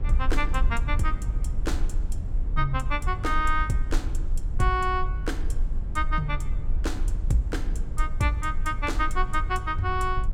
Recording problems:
low-frequency rumble; below 54 Hz, strongest tone 20 Hz, SNR 2 dB

